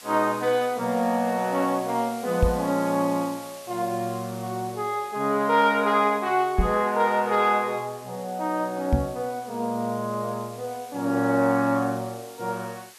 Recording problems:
background hiss; slope +1 dB per octave, SNR 20 dB
microphone thump; at 2.5 s, at 6.5 s and at 9 s; peak +7 dB vs average level

